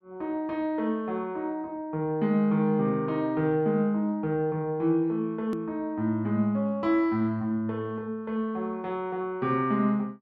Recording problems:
edit click; at 5.5 s

